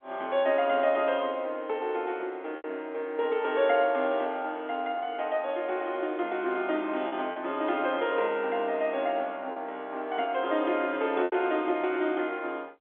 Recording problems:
phone line; 280 Hz to 3.5 kHz, G.711
lost packets; 2% of the sound replaced, filled with repeated pitch periods

